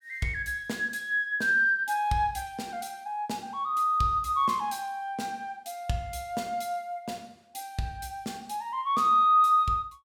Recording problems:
none

